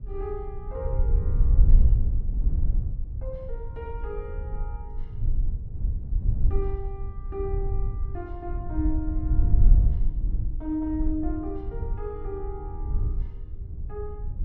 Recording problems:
wind noise; below 62 Hz, SNR -7 dB

